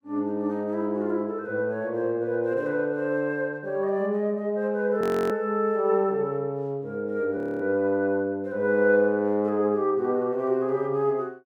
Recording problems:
frozen audio; at 5 s and at 7.5 s

